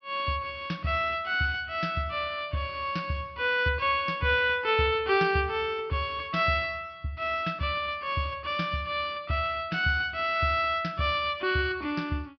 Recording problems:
low-pass filter; nothing above 5.5 kHz

